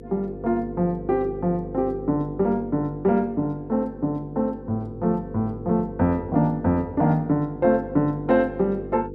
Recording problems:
hum; 50 Hz, harmonics up to 500 Hz, SNR 13 dB

